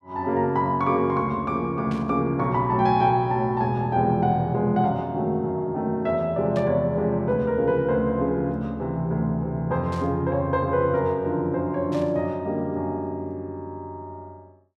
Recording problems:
static burst; 4 times, first at 2 s; peak -13 dB vs average level

